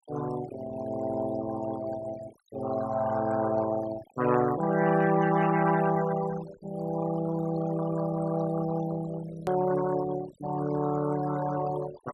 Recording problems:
denoising artefacts; signal-to-artefact ratio 14 dB
hard cut with a click; at 9.5 s

